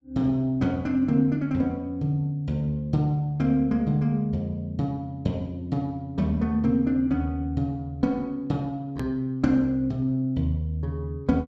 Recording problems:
hard cut with a click; at 9 s

